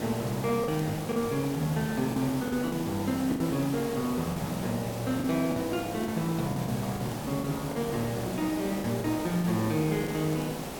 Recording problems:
hiss; slope -6 dB per octave, SNR 7 dB
crackle; vinyl, SNR 29 dB
packet loss; 7% of the sound replaced, filled with the last packet

